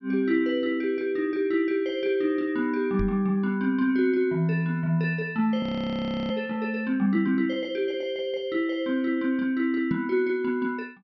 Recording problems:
treble cut off; nothing above 5.8 kHz
microphone bump; at 3 s and at 10 s; peak 0 dB vs average level
frozen audio; at 5.5 s for 0.5 s

